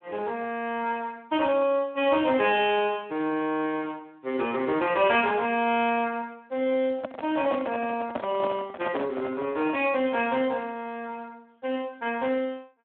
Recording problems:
phone line; 170 Hz to 3.5 kHz, Speex
handling noise; from 7 to 10 s; peak -1 dB vs average level

